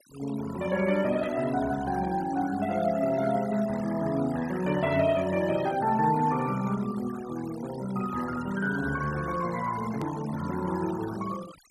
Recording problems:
denoising artefacts; signal-to-artefact ratio 16 dB
hard cut with a click; at 10 s

